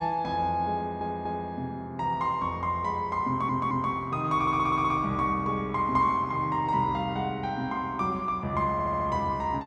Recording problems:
stutter; 4 times, first at 1 s

